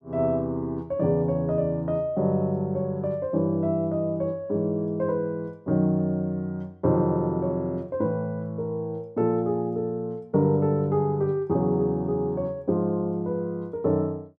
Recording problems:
none

